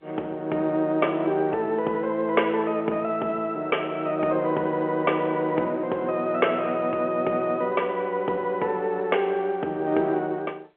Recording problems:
telephone audio; 260 Hz to 3.2 kHz, G.711

